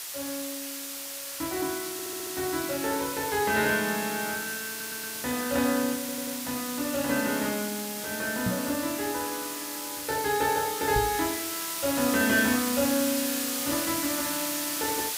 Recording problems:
hiss; slope +2 dB per octave, SNR 3 dB
stutter; at 2 s, at 4.5 s and at 6 s
microphone thump; at 8.5 s and at 11 s; peak +4 dB vs average level

